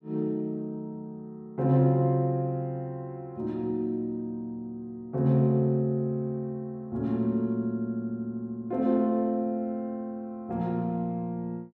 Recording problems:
none

